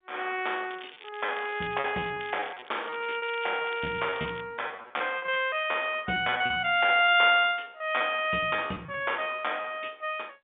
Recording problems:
telephone audio; 150 Hz to 3.6 kHz, G.711
lost packets; 15% of the sound replaced, filled with repeated pitch periods
crackling; from 0.5 to 2 s and from 2 to 4.5 s; loose cable, SNR 19 dB

